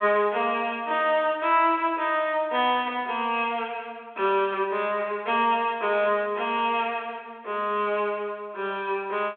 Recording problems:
telephone audio; 340 Hz to 3.5 kHz, G.726

